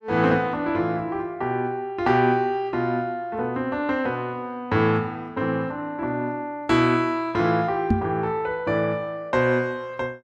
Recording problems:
microphone bump; at 8 s; peak +7 dB vs average level

